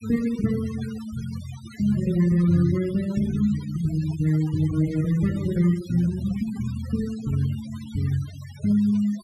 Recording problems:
noise reduction artefacts; signal-to-artefact ratio 18 dB

